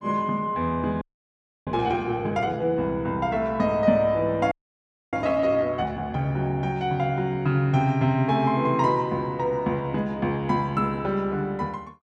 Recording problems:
frozen audio; at 1 s for 0.5 s and at 4.5 s for 0.5 s

